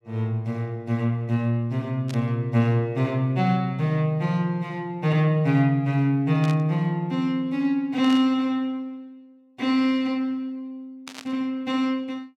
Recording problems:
burst of static; 4 times, first at 2 s; peak -9 dB vs average level

